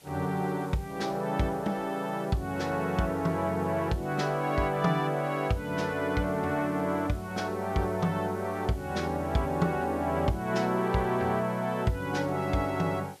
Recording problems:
hiss; SNR 24 dB

